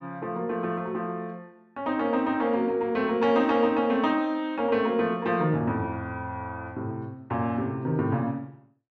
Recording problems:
none

